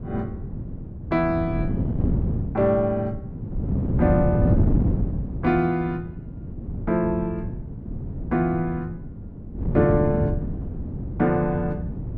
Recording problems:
wind on the microphone; below 210 Hz, SNR 3 dB

